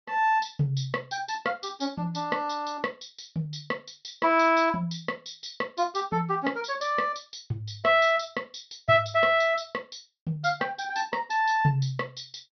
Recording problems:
treble cut off; nothing above 6.1 kHz

